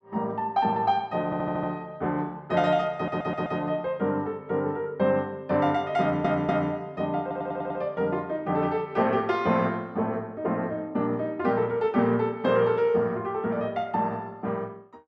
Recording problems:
stutter; 4 times, first at 1.5 s

